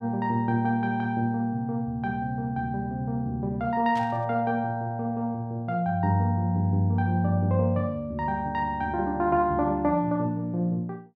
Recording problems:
static burst; at 4 s; peak -12 dB vs average level

